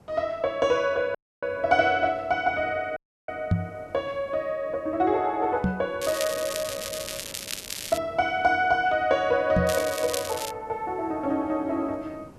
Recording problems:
background hiss; SNR 25 dB
audio cutting out; at 1 s and at 3 s
microphone thump; at 3.5 s, at 5.5 s and at 9.5 s; peak +6 dB vs average level
crackling; from 6 to 8 s and at 9.5 s; loose cable, SNR 8 dB

